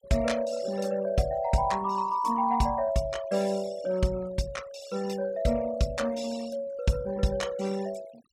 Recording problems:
noise reduction artefacts; signal-to-artefact ratio 20 dB

